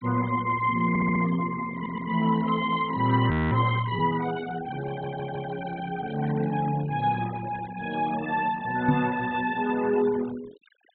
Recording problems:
treble cut off; nothing above 4 kHz
noise reduction artefacts; signal-to-artefact ratio 16 dB
audio stuttering; at 1 s, at 1.5 s and at 5 s
frozen audio; at 3.5 s
knock on the microphone; at 9 s; peak +5 dB vs average level

